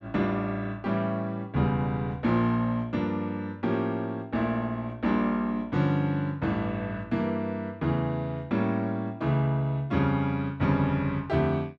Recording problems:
none

